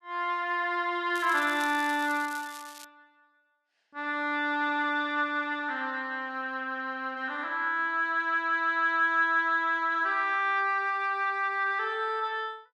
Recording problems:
crackling; from 1 to 3 s; loose cable, SNR 18 dB

